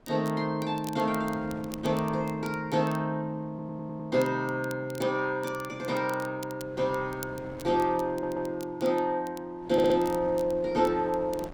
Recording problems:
wind on the microphone; below 630 Hz, SNR 21 dB
crackle; vinyl, SNR 21 dB
audio stuttering; at 3.5 s, at 8 s and at 9.5 s

